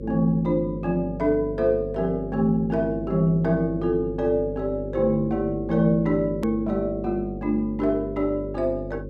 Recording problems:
hum; 50 Hz, harmonics up to 550 Hz, SNR 11 dB
edit click; at 6.5 s

